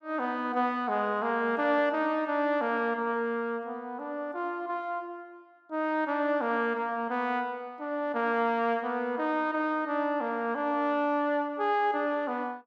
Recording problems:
none

